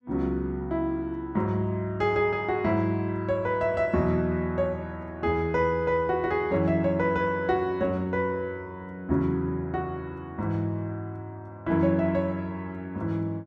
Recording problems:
none

